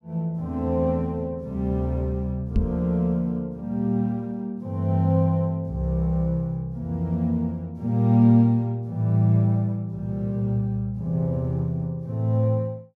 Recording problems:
microphone bump; at 2.5 s; peak +5 dB vs average level

